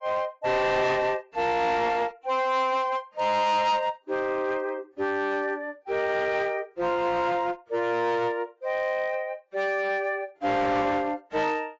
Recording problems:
lossy compression; AAC, log-spectral distance 2 dB
distorted audio; hard clipping, signal-to-distortion ratio 12 dB

